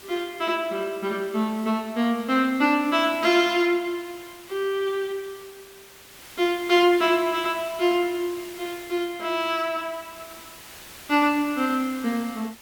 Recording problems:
background hiss; slope -1 dB per octave, SNR 19 dB

